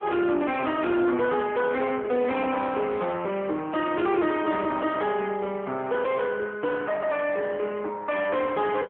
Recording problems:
phone line; 170 Hz to 3.5 kHz, AMR-NB
distorted audio; soft clipping, signal-to-distortion ratio 9 dB

